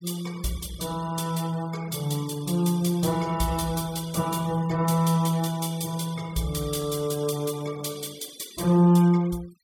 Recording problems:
noise reduction artefacts; signal-to-artefact ratio 20 dB

